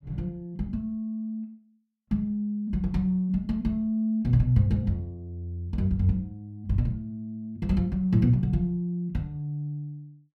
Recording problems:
none

